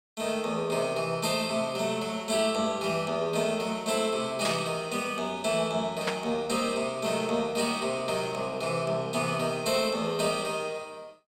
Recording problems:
burst of static; at 4.5 s and at 6 s; peak +3 dB vs average level

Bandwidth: 16.5 kHz